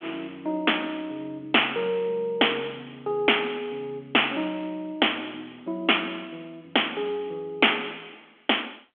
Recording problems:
telephone audio; 240 Hz to 3.4 kHz, G.726

